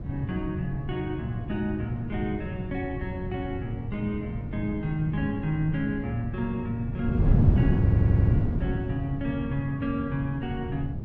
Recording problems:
wind on the microphone; below 160 Hz, SNR -2 dB
stutter; at 8 s

